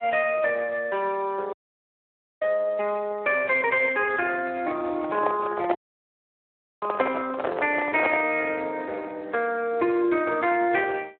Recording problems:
telephone audio; 300 Hz to 3.1 kHz, Speex
dropout; at 1.5 s for 1 s and at 6 s for 1 s
handling noise; from 5 to 8.5 s; peak +5 dB vs average level

